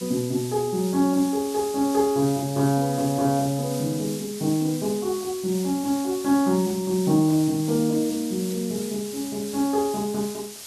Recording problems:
hiss; slope +1 dB per octave, SNR 12 dB

